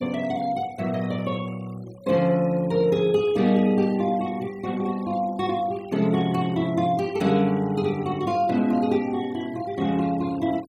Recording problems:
denoising artefacts; signal-to-artefact ratio 24 dB

